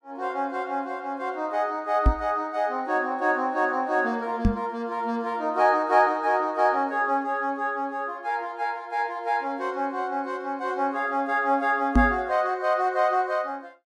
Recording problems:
microphone thump; at 2 s, at 4.5 s and at 12 s; peak +8 dB vs average level

